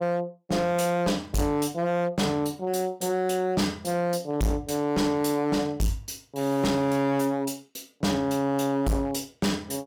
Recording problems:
distorted audio; hard clipping, signal-to-distortion ratio 7 dB

